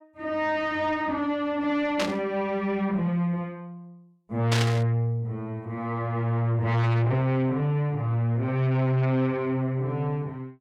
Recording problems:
distorted audio; soft clipping, signal-to-distortion ratio 6 dB
burst of static; at 2 s and at 4.5 s; peak +3 dB vs average level

